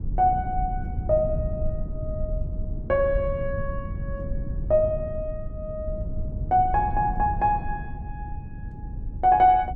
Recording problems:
rumble; below 110 Hz, SNR 8 dB

